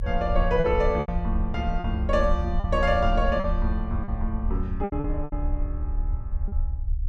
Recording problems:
low-frequency rumble; below 68 Hz, strongest tone 32 Hz, SNR 3 dB
packet loss; 8% of the sound replaced, filled with repeated pitch periods

